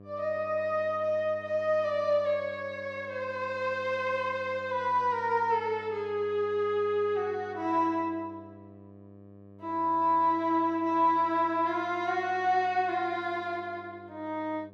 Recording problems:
hum; 50 Hz, harmonics up to 1.2 kHz, SNR 22 dB

